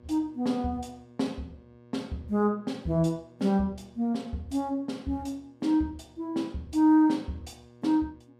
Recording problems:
electrical hum; 60 Hz, harmonics up to 1.7 kHz, SNR 27 dB

